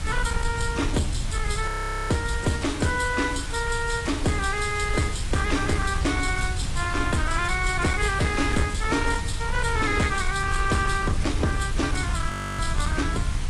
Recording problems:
lossy codec; AAC, log-spectral distance 6 dB, nothing above 11 kHz
distorted audio; hard clipping, uneven, signal-to-distortion ratio 11 dB
hiss; slope -1 dB per octave, SNR 11 dB
low-frequency rumble; below 88 Hz, SNR 5 dB
audio freezing; at 1.5 s and at 12 s
crackling; from 4.5 to 6 s and from 8.5 to 13 s; loose cable, SNR 24 dB

